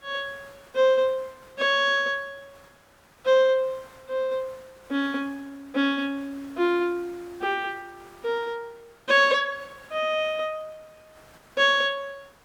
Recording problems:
background hiss; SNR 27 dB

